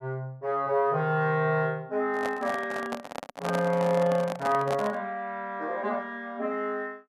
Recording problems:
handling noise; from 2 to 5 s; peak 0 dB vs average level

